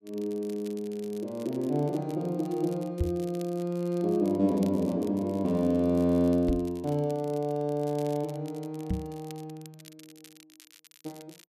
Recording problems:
crackling; vinyl, SNR 24 dB
microphone bump; at 3 s, at 6.5 s and at 9 s; peak +4 dB vs average level

